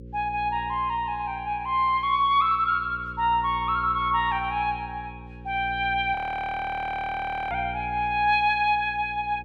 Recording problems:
hum; 60 Hz, harmonics up to 540 Hz, SNR 17 dB
frozen audio; at 6 s for 1.5 s

